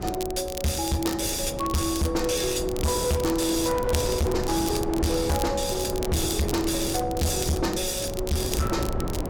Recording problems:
distortion; hard clipping, signal-to-distortion ratio 7 dB
wind on the microphone; below 470 Hz, SNR 7 dB
crackle; vinyl, SNR 12 dB

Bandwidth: 17 kHz